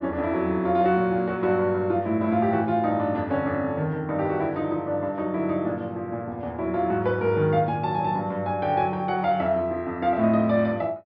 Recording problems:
treble cut off; nothing above 5.5 kHz

